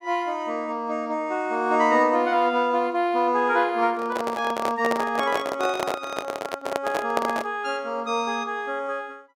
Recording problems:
handling noise; from 4 to 7.5 s; peak +2 dB vs average level

